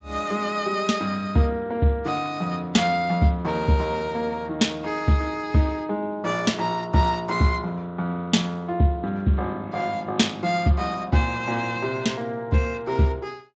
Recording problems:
lossy compression; Speex, log-spectral distance 3 dB, nothing above 7.6 kHz

